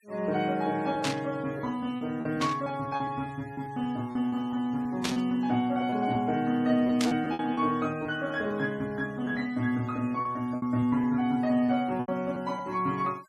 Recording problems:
noise reduction artefacts; signal-to-artefact ratio 26 dB
lost packets; 7% of the sound replaced, filled with repeated pitch periods
static burst; 4 times, first at 1 s; peak +2 dB vs average level

